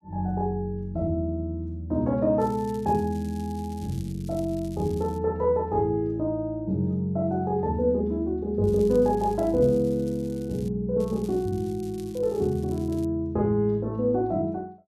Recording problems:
crackling; from 2.5 to 5 s, from 8.5 to 11 s and from 11 to 13 s; loose cable, SNR 25 dB

